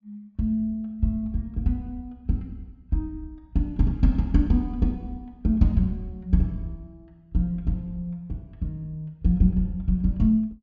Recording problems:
treble cut off; nothing above 7 kHz

